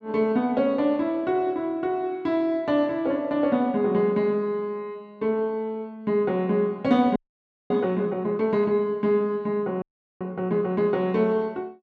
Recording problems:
frozen audio; at 7 s for 0.5 s and at 10 s

